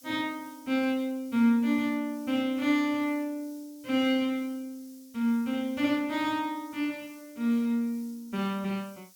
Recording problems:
hiss; SNR 25 dB

